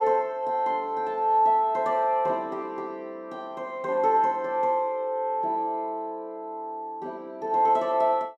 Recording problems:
none

